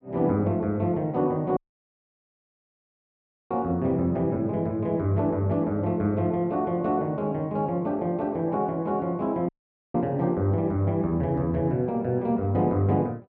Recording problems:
dropout; at 1.5 s for 2 s and at 9.5 s

